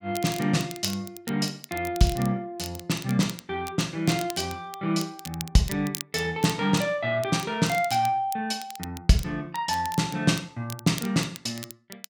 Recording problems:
crackling; vinyl, SNR 14 dB

